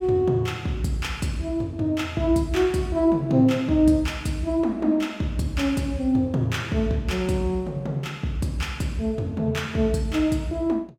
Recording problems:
none

